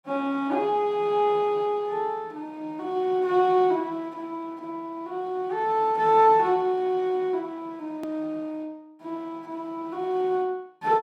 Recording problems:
hard cut with a click; at 8 s

